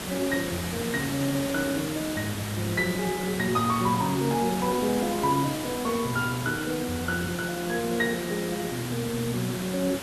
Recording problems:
background hiss; slope -3 dB per octave, SNR 6 dB

